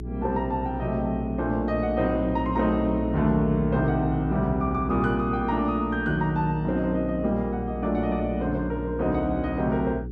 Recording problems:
electrical hum; 60 Hz, harmonics up to 420 Hz, SNR 8 dB

